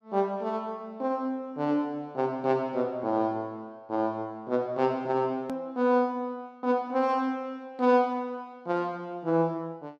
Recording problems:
edit click; at 5.5 s

